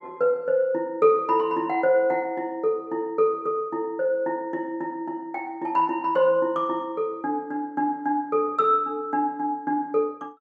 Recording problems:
none

